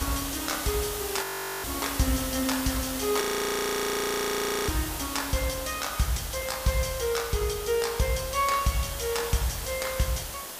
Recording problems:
background hiss; slope -2 dB per octave, SNR 6 dB
audio freezing; at 1 s and at 3 s for 1.5 s

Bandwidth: 15 kHz